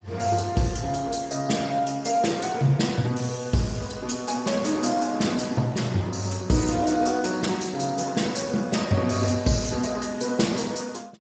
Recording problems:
lossy compression; Speex, log-spectral distance 7 dB, nothing above 7.6 kHz

